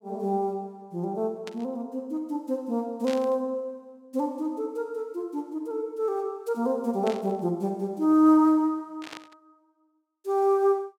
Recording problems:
burst of static; 4 times, first at 1.5 s; peak -8 dB vs average level

